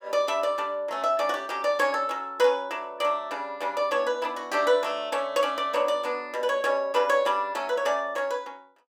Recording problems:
none

